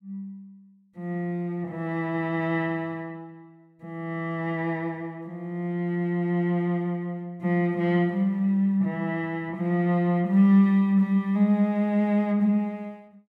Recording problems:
none

